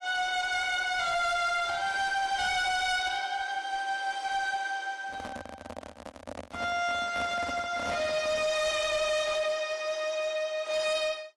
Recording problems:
lossy codec; AAC, log-spectral distance 3 dB, nothing above 11.3 kHz
distortion; hard clipping, signal-to-distortion ratio 12 dB
microphone handling noise; from 5 to 8.5 s; peak -5 dB vs average level

